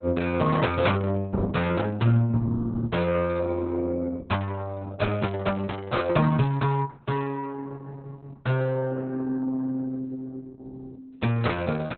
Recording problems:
lossy codec; Opus, log-spectral distance 3 dB, nothing above 4 kHz

